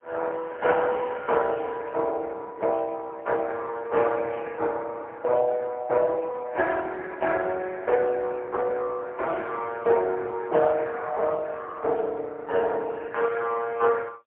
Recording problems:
phone line; 370 Hz to 3.3 kHz, AMR-NB, then MP3

